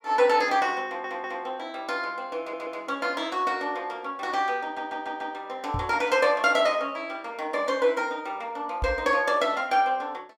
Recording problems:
stutter; at 1 s, at 2.5 s and at 4.5 s
microphone bump; at 5.5 s and at 9 s; peak -1 dB vs average level

